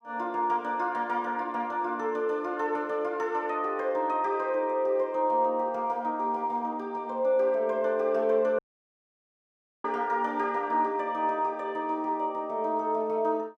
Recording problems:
dropout; at 8.5 s for 1.5 s

